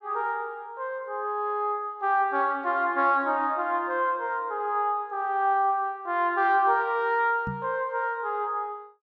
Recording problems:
low-pass filter; nothing above 8 kHz
microphone bump; at 7.5 s; peak -4 dB vs average level

